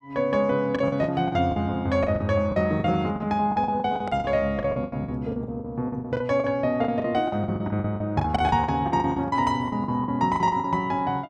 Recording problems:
lost packets; 18% of the sound replaced, filled with the last packet

